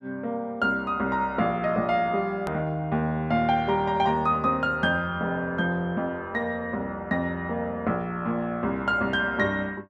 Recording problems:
edit click; at 2.5 s

